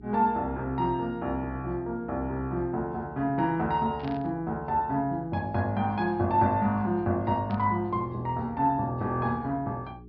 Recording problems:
treble cut off; nothing above 5.5 kHz
hum; 60 Hz, harmonics up to 420 Hz, SNR 22 dB
burst of static; at 4 s and at 7.5 s; peak -12 dB vs average level

